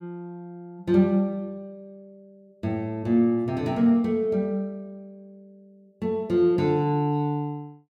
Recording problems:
none

